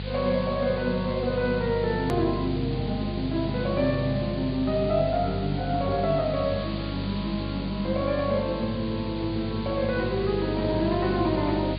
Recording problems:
low-pass filter; nothing above 4.8 kHz
hum; 50 Hz, harmonics up to 450 Hz, SNR 7 dB
background hiss; SNR 14 dB
click at an edit; at 2 s

